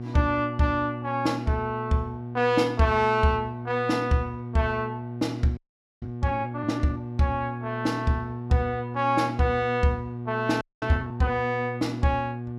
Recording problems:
electrical hum; 60 Hz, harmonics up to 840 Hz, SNR 9 dB
audio freezing; at 5.5 s and at 11 s

